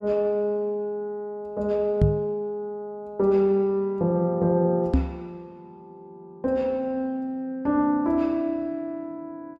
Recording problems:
microphone thump; at 2 s and at 5 s; peak +8 dB vs average level

